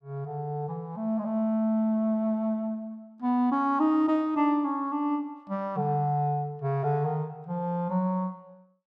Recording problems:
none

